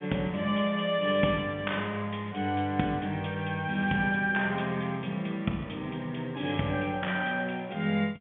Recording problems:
phone line; 130 Hz to 3.6 kHz, G.711

